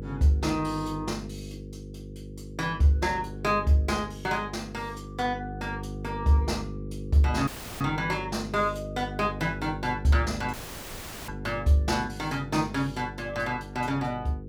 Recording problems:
electrical hum; 50 Hz, harmonics up to 500 Hz, SNR 11 dB
dropout; at 7.5 s and at 11 s for 1 s

